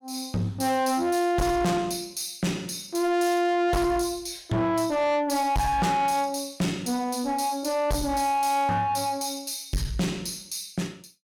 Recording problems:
distortion; soft clipping, signal-to-distortion ratio 7 dB

